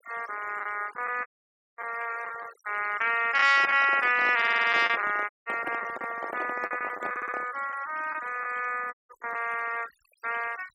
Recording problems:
denoising artefacts; signal-to-artefact ratio 16 dB
packet loss; 5% of the sound replaced, filled with the last packet
audio cutting out; at 1.5 s for 0.5 s, at 5.5 s and at 9 s
microphone handling noise; from 3.5 to 7.5 s; peak -5 dB vs average level
stutter; at 4.5 s and at 7 s

